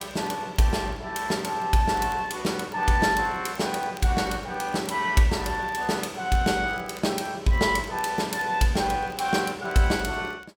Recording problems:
crackling; vinyl, SNR 28 dB

